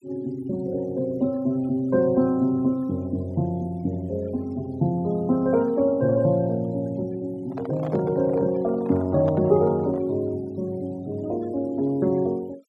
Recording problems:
noise reduction artefacts; signal-to-artefact ratio 27 dB
microphone handling noise; from 7.5 to 10 s; peak -7 dB vs average level

